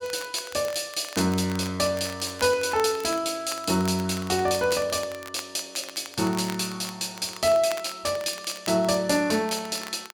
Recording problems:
crackling; vinyl, SNR 16 dB

